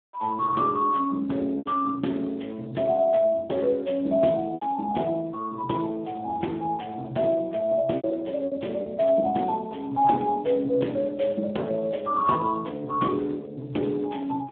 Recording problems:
phone line; 170 Hz to 3.4 kHz, Speex
lost packets; 3% of the sound replaced, filled with repeated pitch periods

